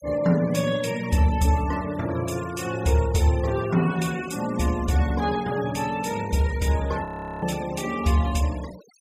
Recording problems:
denoising artefacts; signal-to-artefact ratio 18 dB
frozen audio; at 7 s

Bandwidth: 15.5 kHz